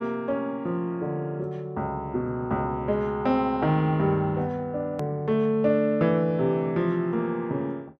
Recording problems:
hard cut with a click; at 5 s

